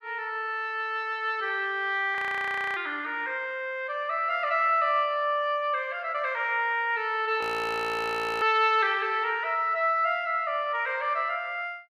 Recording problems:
audio freezing; at 2 s for 0.5 s and at 7.5 s for 1 s

